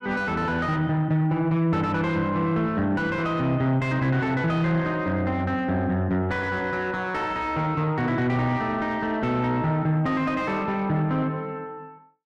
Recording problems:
distorted audio; soft clipping, signal-to-distortion ratio 9 dB

